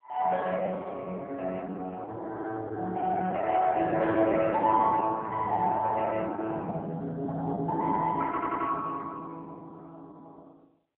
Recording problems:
phone line; 220 Hz to 3 kHz, AMR-NB
packet loss; 8% of the sound replaced, filled with the last packet
audio stuttering; at 8.5 s

